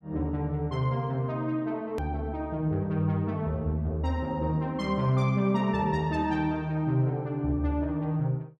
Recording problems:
click at an edit; at 2 s

